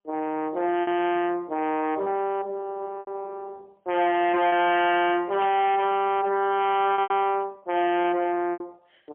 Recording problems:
phone line; 220 Hz to 3.3 kHz, AMR-NB, then MP3
distorted audio; hard clipping, signal-to-distortion ratio 6 dB
lost packets; 5% of the sound replaced, filled with repeated pitch periods
static burst; at 5.5 s; peak -11 dB vs average level

